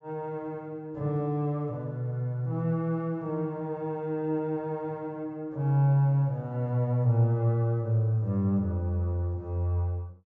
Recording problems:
low-pass filter; nothing above 8 kHz

